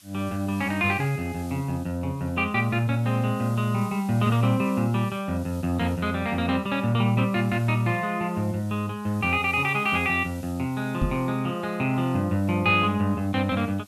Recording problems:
hiss; slope +3 dB per octave, SNR 24 dB
microphone thump; at 11 s; peak +3 dB vs average level

